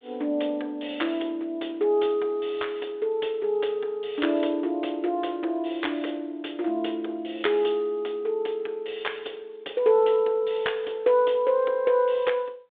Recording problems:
phone line; 320 Hz to 3.6 kHz, G.726

